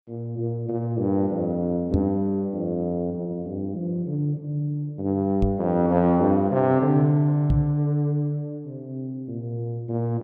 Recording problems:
microphone bump; at 2 s, at 5.5 s and at 7.5 s; peak +6 dB vs average level

